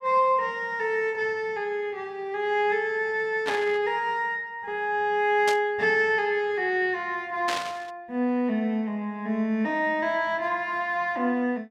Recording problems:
burst of static; at 3.5 s, at 5.5 s and at 7.5 s; peak 0 dB vs average level

